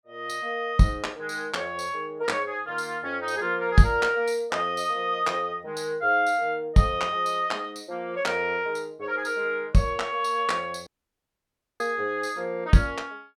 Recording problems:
audio cutting out; at 11 s for 1 s

